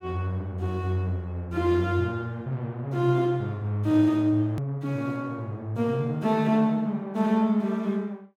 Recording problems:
click at an edit; at 4.5 s

